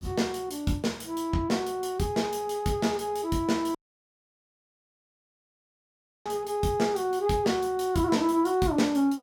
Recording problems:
dropout; at 4 s for 2.5 s

